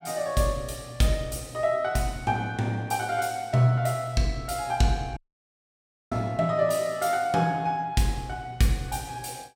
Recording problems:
audio cutting out; at 5 s for 1 s

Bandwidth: 17.5 kHz